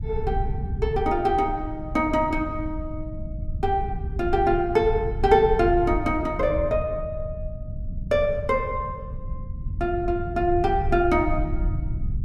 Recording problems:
rumble; below 100 Hz, SNR 8 dB

